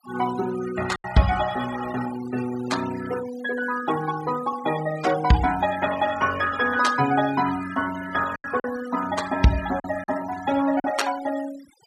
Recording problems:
noise reduction artefacts; signal-to-artefact ratio 13 dB
lost packets; 3% of the sound replaced, filled with silence

